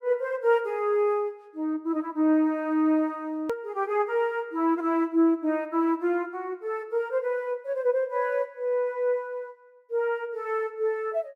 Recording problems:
edit click; at 3.5 s

